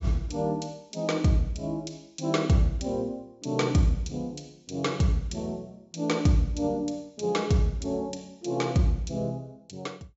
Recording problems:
treble missing; nothing above 8 kHz

